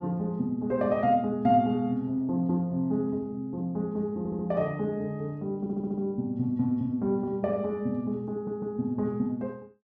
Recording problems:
stutter; at 4 s, at 5.5 s and at 8.5 s

